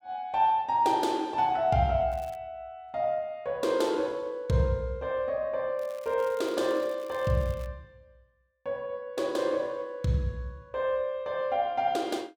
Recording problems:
crackle; at 2 s and from 6 to 7.5 s; loose cable, SNR 25 dB

